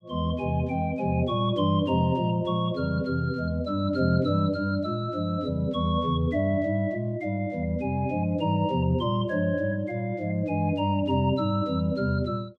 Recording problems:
none

